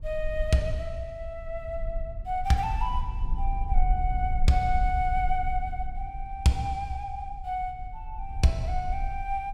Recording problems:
rumble; below 48 Hz, strongest tone 24 Hz, SNR 5 dB

